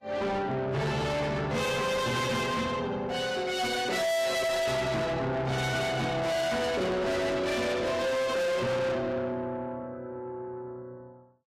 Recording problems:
codec artefacts; Vorbis, log-spectral distance 3 dB, nothing above 15.1 kHz
distortion; soft clipping, signal-to-distortion ratio 6 dB

